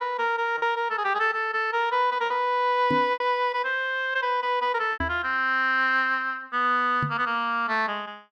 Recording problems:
lost packets; 3% of the sound replaced, filled with repeated pitch periods
microphone bump; at 3 s, at 5 s and at 7 s; peak -1 dB vs average level

